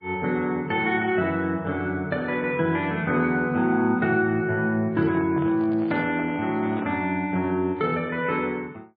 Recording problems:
lossy codec; MP3, log-spectral distance 2 dB
microphone handling noise; from 5 to 7 s; peak -8 dB vs average level

